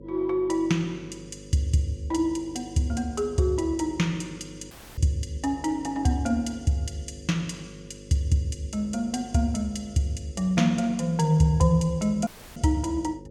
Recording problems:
hum; 50 Hz, harmonics up to 550 Hz, SNR 19 dB
audio cutting out; at 4.5 s and at 12 s

